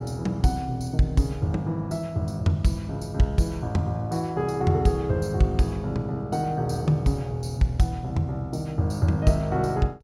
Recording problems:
none

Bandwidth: 16 kHz